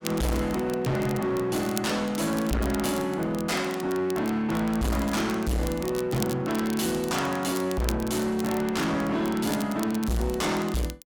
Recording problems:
distorted audio; hard clipping, uneven, signal-to-distortion ratio 6 dB
crackling; vinyl, SNR 14 dB

